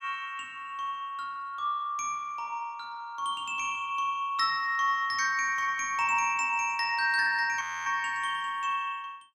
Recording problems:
audio freezing; at 7.5 s

